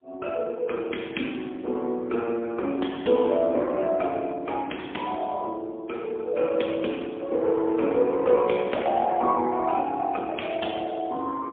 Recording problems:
phone line; 220 Hz to 3.4 kHz, AMR-NB, then MP3

